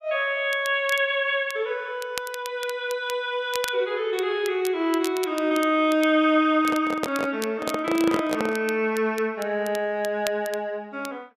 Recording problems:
crackling; vinyl, SNR 15 dB
microphone handling noise; from 6.5 to 8.5 s; peak 0 dB vs average level

